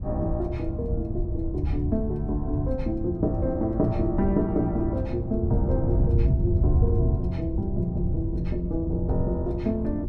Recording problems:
wind on the microphone; below 110 Hz, SNR 0 dB

